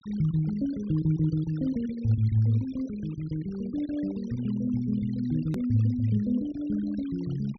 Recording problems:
treble cut off; nothing above 6 kHz
noise reduction artefacts; signal-to-artefact ratio 21 dB
edit click; at 5.5 s

